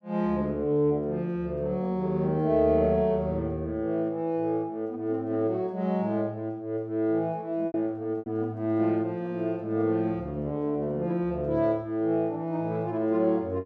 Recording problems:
packet loss; 1.2% of the sound replaced, filled with repeated pitch periods

